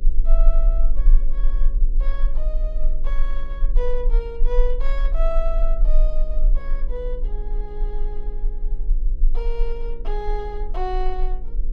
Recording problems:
electrical hum; 60 Hz, harmonics up to 540 Hz, SNR 10 dB
low-frequency rumble; below 32 Hz, strongest tone 20 Hz, SNR -8 dB

